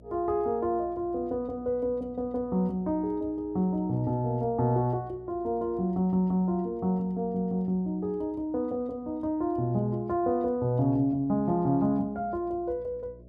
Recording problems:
electrical hum; 60 Hz, harmonics up to 660 Hz, SNR 24 dB

